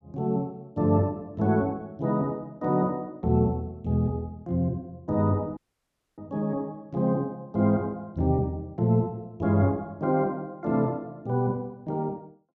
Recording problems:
audio cutting out; at 5.5 s for 0.5 s

